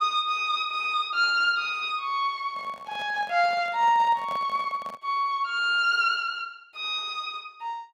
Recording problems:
microphone handling noise; from 2.5 to 5 s; peak -10 dB vs average level

